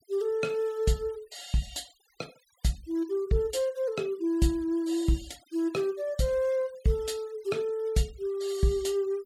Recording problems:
noise reduction artefacts; signal-to-artefact ratio 23 dB

